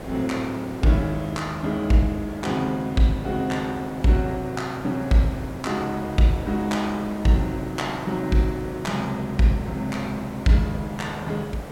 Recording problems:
background hiss; slope -8 dB per octave, SNR 13 dB

